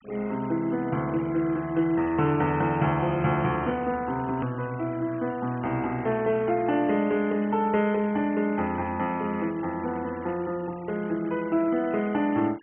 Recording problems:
treble missing; nothing above 3.1 kHz
denoising artefacts; signal-to-artefact ratio 22 dB
edit click; at 4.5 s

